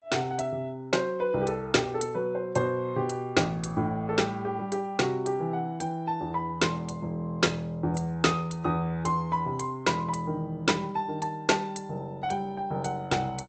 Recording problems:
lossy codec; AAC, then G.722, log-spectral distance 3 dB, nothing above 8.2 kHz

